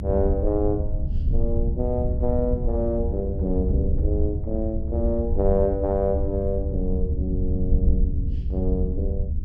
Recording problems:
low-frequency rumble; below 78 Hz, SNR 0 dB

